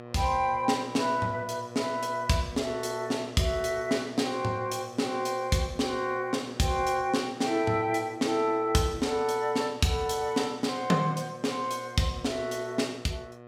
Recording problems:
hum; 60 Hz, harmonics up to 2.5 kHz, SNR 17 dB

